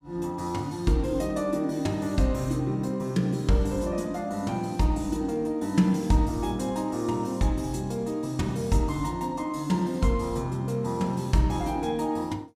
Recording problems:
none

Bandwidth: 15.5 kHz